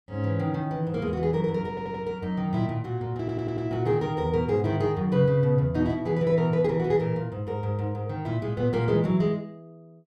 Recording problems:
stutter; at 1.5 s and at 3 s

